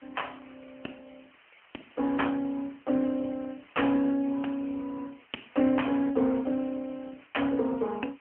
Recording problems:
telephone audio; 190 Hz to 3.1 kHz, AMR-NB
background hiss; SNR 27 dB

